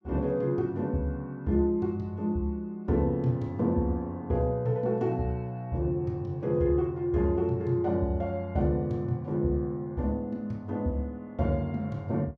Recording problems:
none

